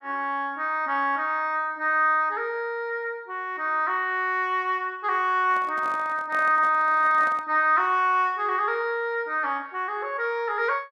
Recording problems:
handling noise; from 5.5 to 7.5 s; peak -12 dB vs average level

